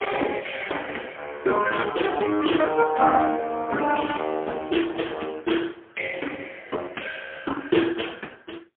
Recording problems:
phone line; 240 Hz to 3.3 kHz, AMR-NB, then MP3

